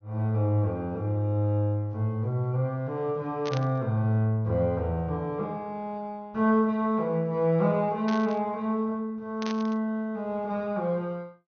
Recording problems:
low-pass filter; nothing above 6.4 kHz
burst of static; at 3.5 s, at 8 s and at 9.5 s; peak -6 dB vs average level

